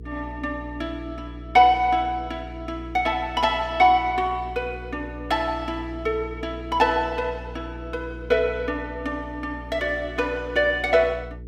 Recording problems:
hum; 60 Hz, harmonics up to 480 Hz, SNR 15 dB

